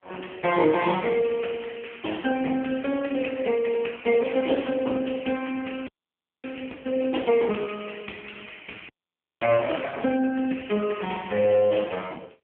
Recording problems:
phone line; 220 Hz to 3.1 kHz, AMR-NB
frozen audio; at 6 s for 0.5 s and at 9 s for 0.5 s

